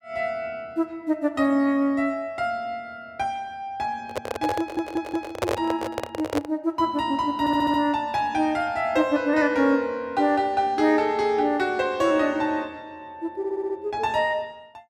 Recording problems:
microphone handling noise; from 4 to 6.5 s; peak +3 dB vs average level
stutter; at 4.5 s, at 7.5 s and at 13 s

